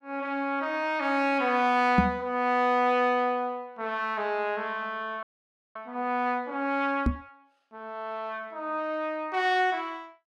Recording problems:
knock on the microphone; at 2 s and at 7 s; peak +9 dB vs average level
audio freezing; at 5 s for 0.5 s

